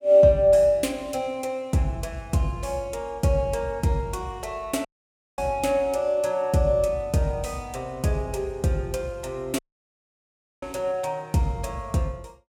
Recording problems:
dropout; at 5 s for 0.5 s and at 9.5 s for 1 s

